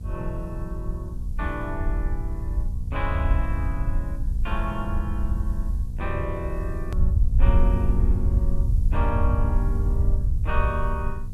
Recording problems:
electrical hum; 60 Hz, harmonics up to 720 Hz, SNR 7 dB
hiss; slope +4 dB per octave, SNR 27 dB
rumble; below 74 Hz, SNR -6 dB
hard cut with a click; at 7 s

